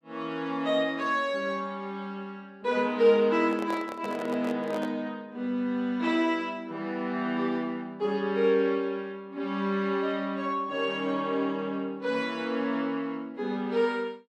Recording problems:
handling noise; from 3.5 to 5 s; peak -5 dB vs average level

